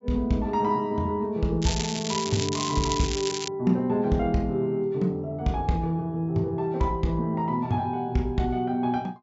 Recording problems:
treble missing; nothing above 8 kHz
crackling; from 1.5 to 3.5 s; loose cable, SNR 5 dB

